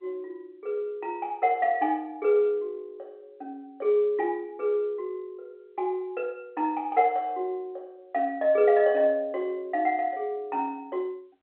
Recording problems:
phone line; 280 Hz to 3.4 kHz, G.711

